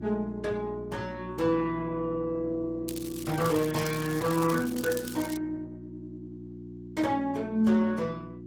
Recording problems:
codec artefacts; AAC, then Opus, log-spectral distance 3 dB, nothing above 15.5 kHz
hum; 60 Hz, harmonics up to 360 Hz, SNR 13 dB
crackling; from 3 to 5.5 s; loose cable, SNR 12 dB

